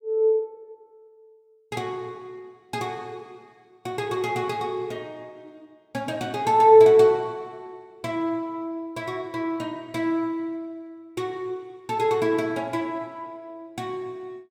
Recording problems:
none

